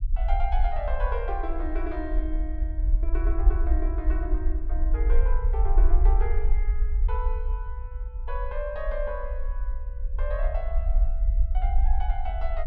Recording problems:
rumble; below 50 Hz, SNR -8 dB

